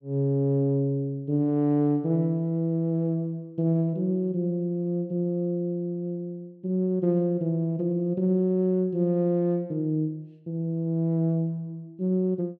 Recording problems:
none

